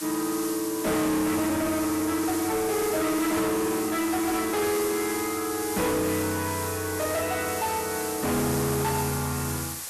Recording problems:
distortion; soft clipping, signal-to-distortion ratio 7 dB
background hiss; slope +1 dB per octave, SNR 6 dB

